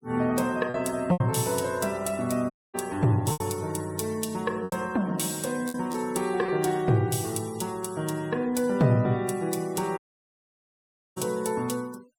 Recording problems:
noise reduction artefacts; signal-to-artefact ratio 21 dB
packet loss; 3% of the sound replaced, filled with repeated pitch periods
audio cutting out; at 2.5 s and at 10 s for 1 s

